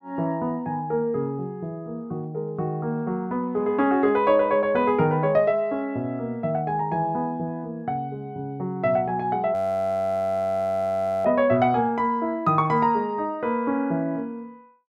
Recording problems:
audio freezing; at 9.5 s for 1.5 s

